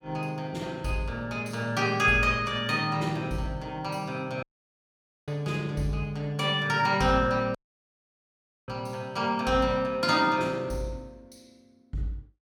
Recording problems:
dropout; at 4.5 s for 1 s and at 7.5 s for 1 s

